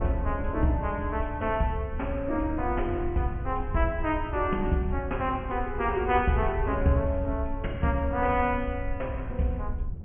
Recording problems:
treble cut off; nothing above 3.1 kHz
wind noise; below 84 Hz, SNR 8 dB

